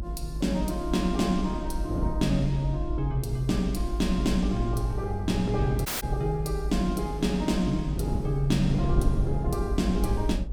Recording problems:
low-frequency rumble; below 56 Hz, SNR 6 dB
wind on the microphone; below 260 Hz, SNR 8 dB
dropout; at 6 s

